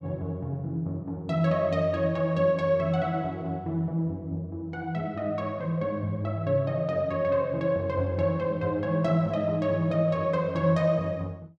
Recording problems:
none

